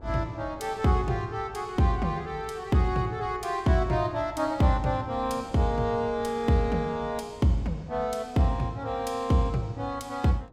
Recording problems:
wind on the microphone; below 460 Hz, SNR 22 dB

